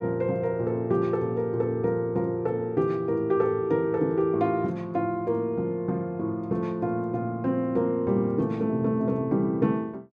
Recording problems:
none

